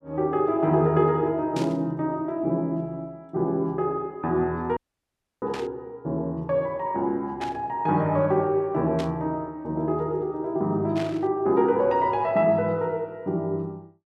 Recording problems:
static burst; 5 times, first at 1.5 s; peak -7 dB vs average level
audio cutting out; at 5 s for 0.5 s

